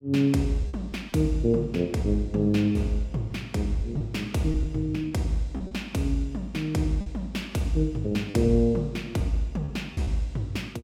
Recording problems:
lost packets; 5% of the sound replaced, filled with repeated pitch periods

